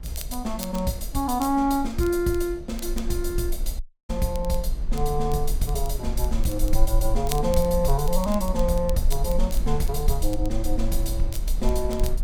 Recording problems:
rumble; below 44 Hz, strongest tone 18 Hz, SNR 4 dB
crackling; vinyl, SNR 17 dB
audio cutting out; at 4 s

